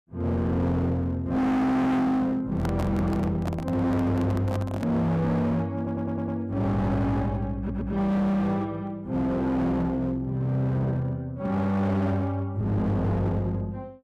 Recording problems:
distortion; hard clipping, uneven, signal-to-distortion ratio 6 dB
handling noise; from 2.5 to 5 s; peak -2 dB vs average level
stutter; at 6 s and at 7.5 s

